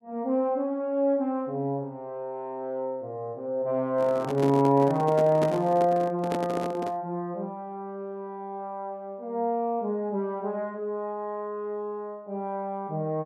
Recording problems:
microphone handling noise; from 4 to 7 s; peak +1 dB vs average level

